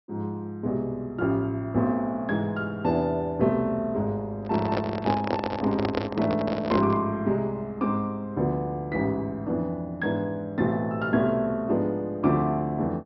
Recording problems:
treble missing; nothing above 5.6 kHz
handling noise; from 4.5 to 7 s; peak +4 dB vs average level

